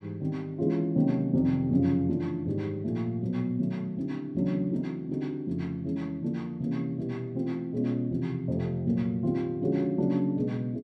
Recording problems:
none

